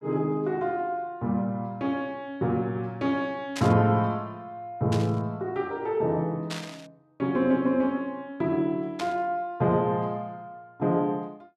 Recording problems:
static burst; 4 times, first at 3.5 s; peak -3 dB vs average level

